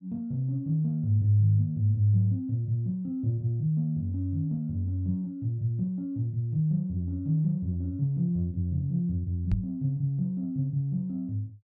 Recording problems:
microphone bump; at 9.5 s; peak +3 dB vs average level

